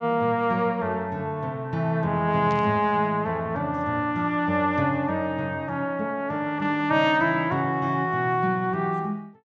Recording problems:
treble missing; nothing above 8 kHz
burst of static; at 2.5 s; peak -14 dB vs average level

